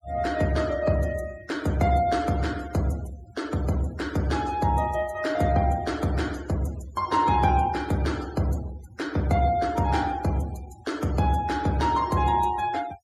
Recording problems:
denoising artefacts; signal-to-artefact ratio 19 dB

